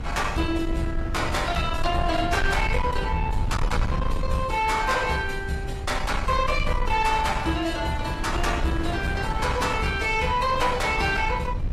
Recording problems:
lossy codec; AAC, log-spectral distance 3 dB
distorted audio; soft clipping, signal-to-distortion ratio 10 dB
low-frequency rumble; below 94 Hz, SNR 6 dB
wind noise; below 480 Hz, SNR 11 dB

